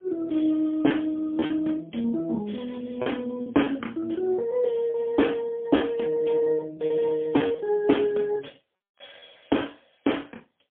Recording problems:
phone line; 190 Hz to 3.4 kHz, AMR-NB, then MP3
lost packets; 5% of the sound replaced, filled with repeated pitch periods

